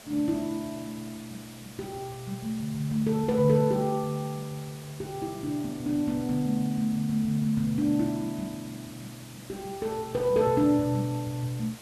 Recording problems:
background hiss; slope -2 dB per octave, SNR 18 dB

